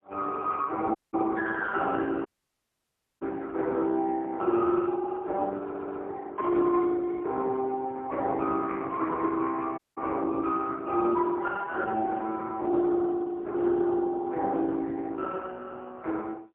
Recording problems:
telephone audio; 260 Hz to 3.4 kHz, AMR-NB, then MP3
audio cutting out; at 1 s, at 2.5 s for 1 s and at 10 s
audio stuttering; at 5.5 s

